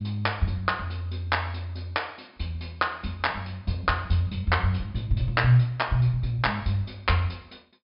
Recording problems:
treble missing; nothing above 5.5 kHz

